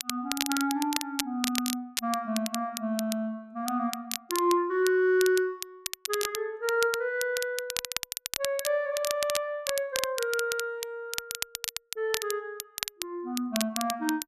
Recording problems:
crackling; vinyl, SNR 5 dB

